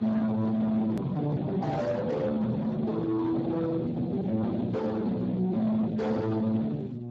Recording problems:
codec artefacts; Speex, then Speex, log-spectral distance 4 dB
distorted audio; soft clipping, signal-to-distortion ratio 5 dB
hum; 60 Hz, harmonics up to 720 Hz, SNR 10 dB
hard cut with a click; at 1 s

